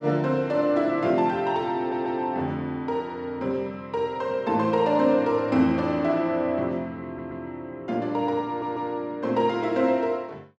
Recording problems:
stutter; at 2 s, at 7 s and at 8.5 s

